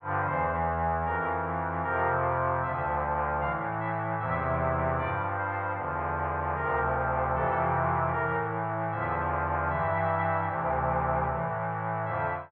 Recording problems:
none

